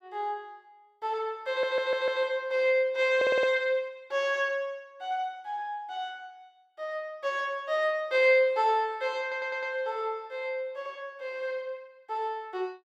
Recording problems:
audio stuttering; at 1.5 s, at 3 s and at 9 s

